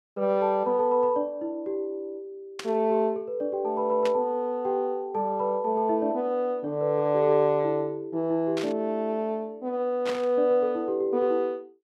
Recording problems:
static burst; 4 times, first at 2.5 s; peak -5 dB vs average level

